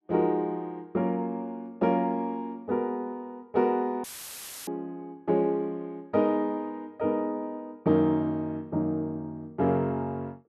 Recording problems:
dropout; at 4 s for 0.5 s; filled with static

